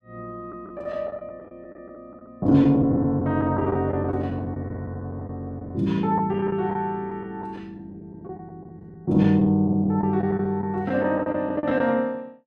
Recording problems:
lost packets; 12% of the sound replaced, filled with the last packet

